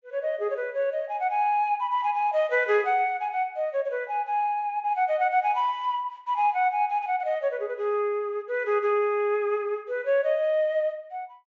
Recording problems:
treble cut off; nothing above 8 kHz

